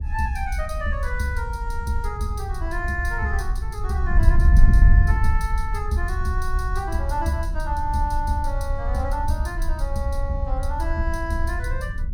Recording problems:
wind noise; below 68 Hz, SNR -3 dB

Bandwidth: 17 kHz